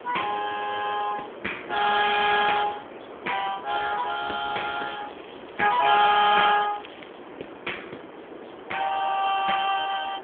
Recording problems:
telephone audio; 260 Hz to 3.4 kHz, AMR-NB
hiss; SNR 17 dB
crackle; from 4 to 7 s; loose cable, SNR 22 dB

